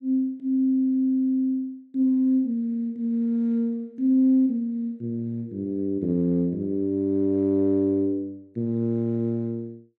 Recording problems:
none

